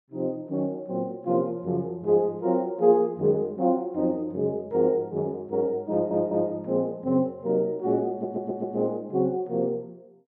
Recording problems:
audio stuttering; at 6 s and at 8 s

